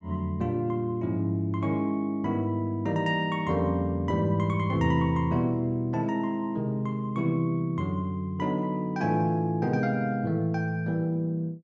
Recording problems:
none

